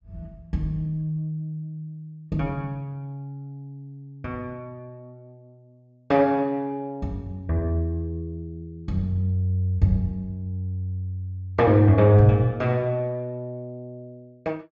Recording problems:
treble missing; nothing above 8 kHz

